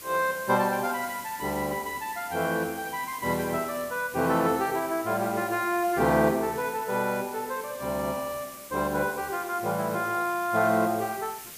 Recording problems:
background hiss; SNR 14 dB

